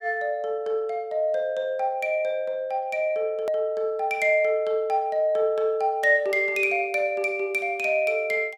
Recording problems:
edit click; at 3.5 s

